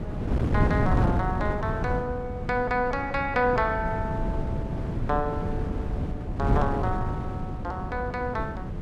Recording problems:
wind on the microphone; below 240 Hz, SNR 1 dB

